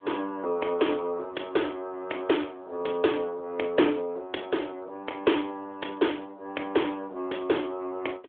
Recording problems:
phone line; 280 Hz to 3.7 kHz, AMR-NB

